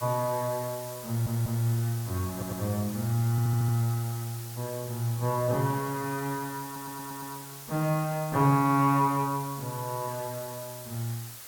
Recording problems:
background hiss; slope 0 dB per octave, SNR 12 dB
stutter; 4 times, first at 1 s

